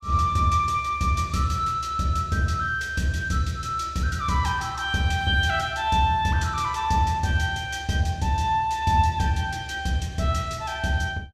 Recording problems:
none

